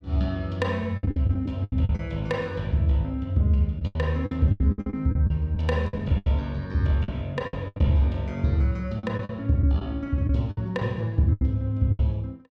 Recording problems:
lost packets; 12% of the sound replaced, filled with the last packet

